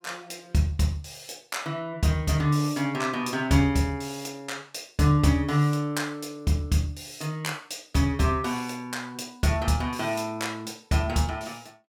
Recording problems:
none

